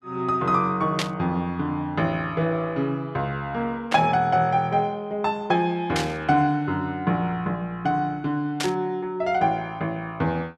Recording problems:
static burst; 4 times, first at 1 s; peak +2 dB vs average level

